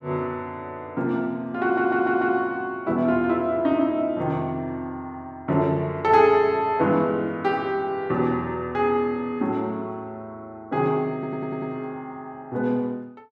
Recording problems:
audio stuttering; at 1.5 s and at 11 s

